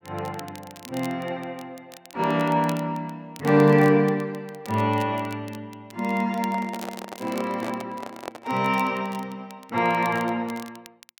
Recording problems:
crackle; vinyl, SNR 22 dB
handling noise; from 6.5 to 8.5 s; peak -5 dB vs average level

